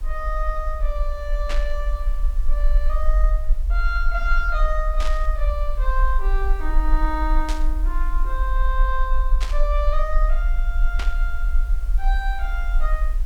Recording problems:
hiss; slope -4 dB per octave, SNR 22 dB
rumble; below 42 Hz, SNR -5 dB
static burst; 5 times, first at 1.5 s; peak +1 dB vs average level

